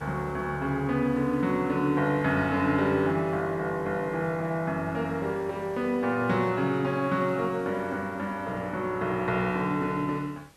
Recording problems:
hiss; slope -3 dB per octave, SNR 27 dB

